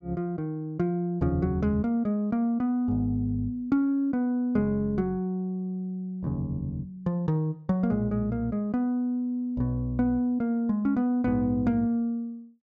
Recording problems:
none

